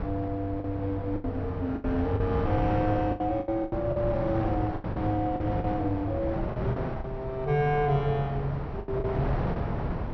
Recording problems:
treble missing; nothing above 6 kHz
electrical hum; 60 Hz, harmonics up to 360 Hz, SNR 21 dB
wind on the microphone; below 530 Hz, SNR 4 dB
packet loss; 10% of the sound replaced, filled with the last packet

